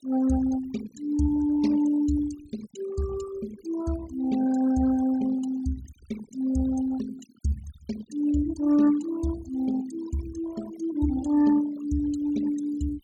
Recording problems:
denoising artefacts; signal-to-artefact ratio 17 dB

